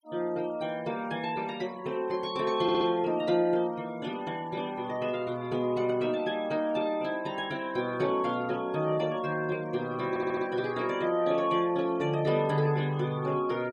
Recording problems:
noise reduction artefacts; signal-to-artefact ratio 23 dB
stutter; at 2.5 s and at 10 s

